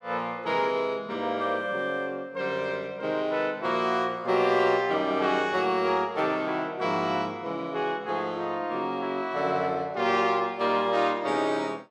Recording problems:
none

